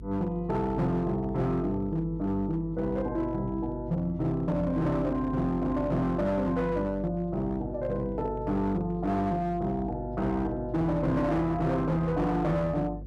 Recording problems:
distortion; hard clipping, signal-to-distortion ratio 11 dB
mains hum; 50 Hz, harmonics up to 450 Hz, SNR 13 dB

